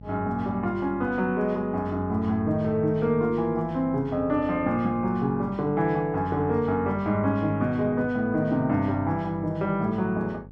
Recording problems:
electrical hum; 50 Hz, harmonics up to 550 Hz, SNR 20 dB

